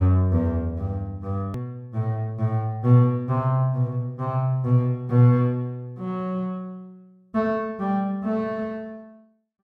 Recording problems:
click at an edit; at 1.5 s

